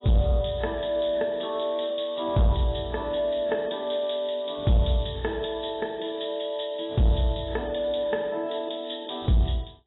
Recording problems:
codec artefacts; AAC, log-spectral distance 8 dB, nothing above 3.8 kHz
distorted audio; soft clipping, signal-to-distortion ratio 11 dB

